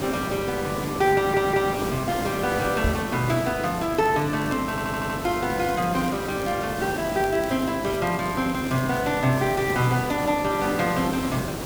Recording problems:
electrical hum; 50 Hz, harmonics up to 500 Hz, SNR 17 dB
hiss; slope -6 dB per octave, SNR 7 dB
audio stuttering; at 1 s and at 4.5 s
knock on the microphone; at 3 s; peak +3 dB vs average level
crackling; from 3.5 to 6.5 s and from 7 to 9.5 s; loose cable, SNR 22 dB

